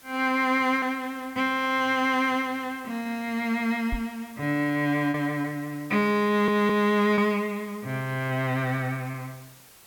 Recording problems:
background hiss; slope -1 dB per octave, SNR 24 dB
packet loss; 1.9% of the sound replaced, filled with repeated pitch periods
microphone bump; at 4 s; peak -3 dB vs average level
audio stuttering; at 6.5 s

